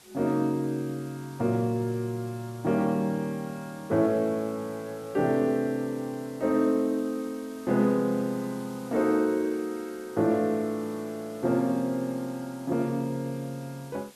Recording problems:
background hiss; slope -1 dB per octave, SNR 23 dB

